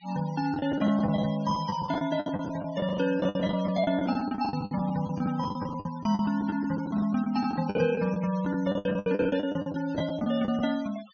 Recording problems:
treble cut off; nothing above 6.5 kHz
denoising artefacts; signal-to-artefact ratio 21 dB
packet loss; 18% of the sound replaced, filled with the last packet

